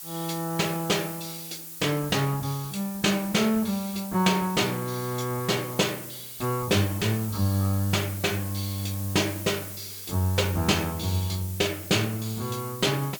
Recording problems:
hiss; slope +3 dB per octave, SNR 11 dB

